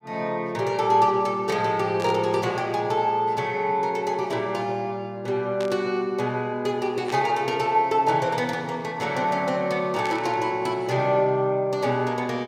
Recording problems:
burst of static; 4 times, first at 2 s; peak -8 dB vs average level

